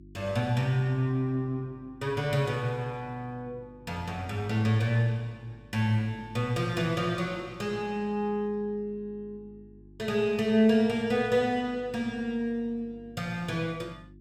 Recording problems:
hum; 50 Hz, harmonics up to 350 Hz, SNR 23 dB

